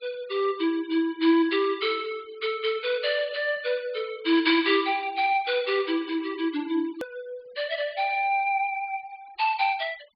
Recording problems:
treble cut off; nothing above 4.9 kHz
denoising artefacts; signal-to-artefact ratio 23 dB
edit click; at 7 s

